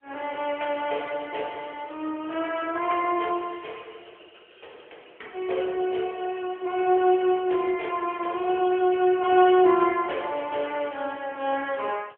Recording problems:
telephone audio; 320 Hz to 3.3 kHz, AMR-NB

